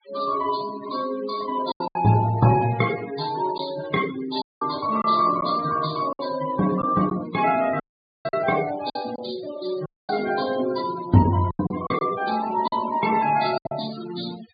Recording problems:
low-pass filter; nothing above 4.7 kHz
noise reduction artefacts; signal-to-artefact ratio 13 dB
packet loss; 5% of the sound replaced, filled with silence
audio cutting out; at 4.5 s, at 8 s and at 10 s

